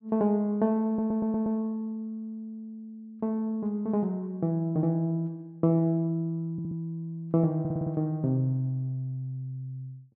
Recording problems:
audio stuttering; at 1 s, at 6.5 s and at 7.5 s

